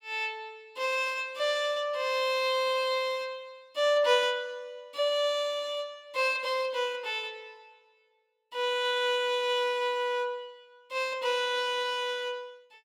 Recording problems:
none

